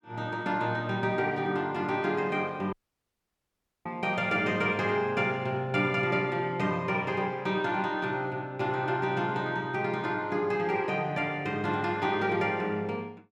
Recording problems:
audio cutting out; at 2.5 s for 1 s

